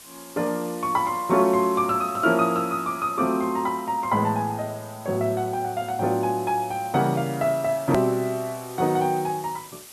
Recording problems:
background hiss; slope 0 dB per octave, SNR 18 dB
hard cut with a click; at 8 s

